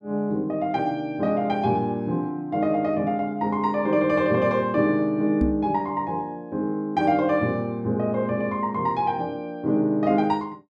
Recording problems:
knock on the microphone; at 5.5 s; peak +3 dB vs average level

